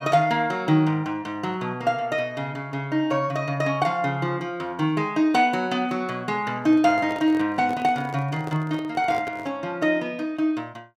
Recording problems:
handling noise; from 6.5 to 9.5 s; peak -8 dB vs average level

